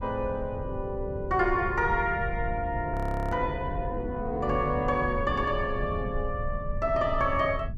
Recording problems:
rumble; below 100 Hz, SNR 8 dB
frozen audio; at 3 s

